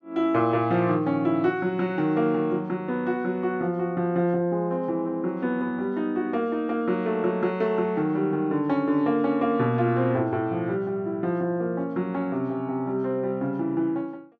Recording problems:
none

